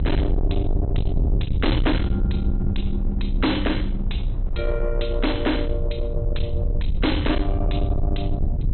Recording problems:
low-pass filter; nothing above 4.1 kHz
distorted audio; soft clipping, signal-to-distortion ratio 8 dB
electrical hum; 60 Hz, harmonics up to 600 Hz, SNR 16 dB
low-frequency rumble; below 92 Hz, strongest tone 30 Hz, SNR -1 dB
wind noise; below 460 Hz, SNR 18 dB

